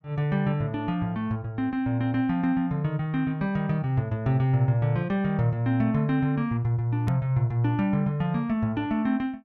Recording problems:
hard cut with a click; at 7 s

